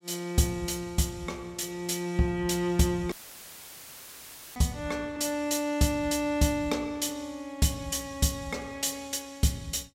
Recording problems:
dropout; at 3 s for 1.5 s; filled with static

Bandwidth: 16 kHz